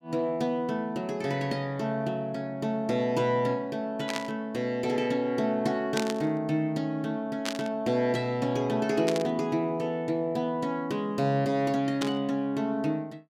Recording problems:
static burst; 5 times, first at 4 s; peak +1 dB vs average level

